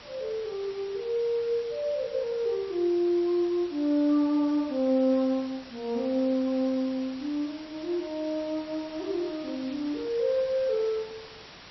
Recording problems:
codec artefacts; MP3, log-spectral distance 5 dB
background hiss; slope -2 dB per octave, SNR 18 dB

